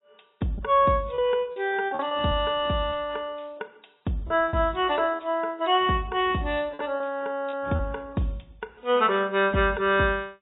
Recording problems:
lossy codec; AAC, log-spectral distance 4 dB
packet loss; 5% of the sound replaced, filled with repeated pitch periods

